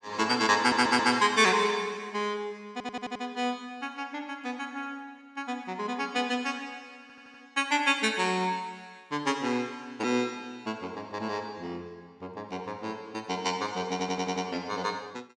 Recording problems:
stutter; 4 times, first at 0.5 s

